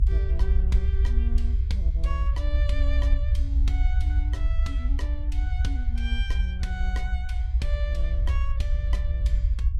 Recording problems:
rumble; below 64 Hz, SNR -12 dB

